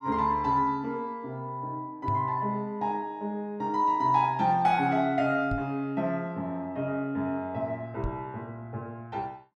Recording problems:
microphone thump; at 2 s, at 5.5 s and at 8 s; peak 0 dB vs average level

